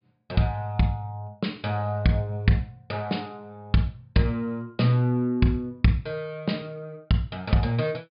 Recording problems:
treble cut off; nothing above 5 kHz

